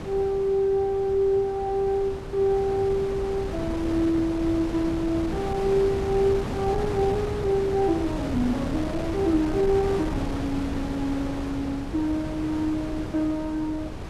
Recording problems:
wind noise; below 510 Hz, SNR 7 dB

